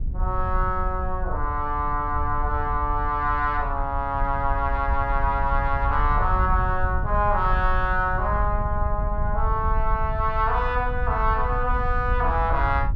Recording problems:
wind noise; below 70 Hz, SNR 4 dB

